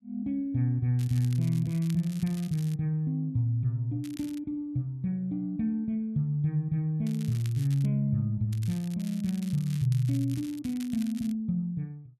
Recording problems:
crackle; 4 times, first at 1 s; loose cable, SNR 20 dB

